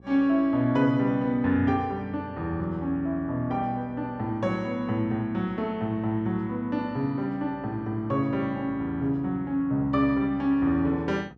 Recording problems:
electrical hum; 60 Hz, harmonics up to 840 Hz, SNR 24 dB

